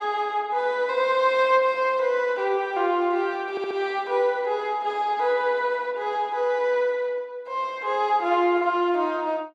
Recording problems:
audio stuttering; at 3.5 s

